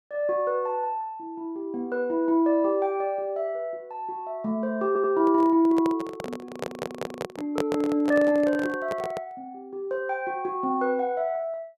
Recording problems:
stutter; at 5 s and at 6.5 s
handling noise; from 5 to 9.5 s; peak +1 dB vs average level

